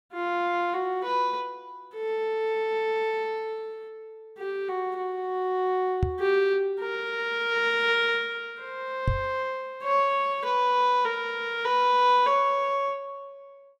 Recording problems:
knock on the microphone; at 6 s and at 9 s; peak +4 dB vs average level

